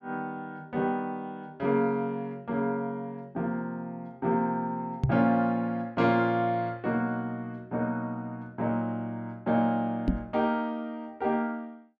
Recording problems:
microphone bump; at 5 s and at 10 s; peak +8 dB vs average level

